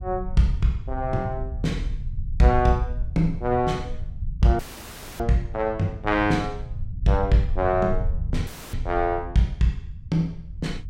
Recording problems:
rumble; below 84 Hz, SNR 8 dB
audio cutting out; at 4.5 s for 0.5 s and at 8.5 s

